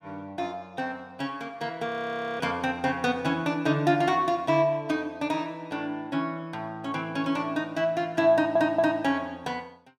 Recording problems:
audio freezing; at 2 s for 0.5 s
stutter; at 8.5 s

